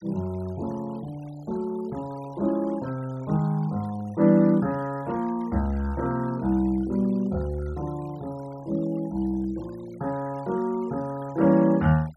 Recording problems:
noise reduction artefacts; signal-to-artefact ratio 24 dB

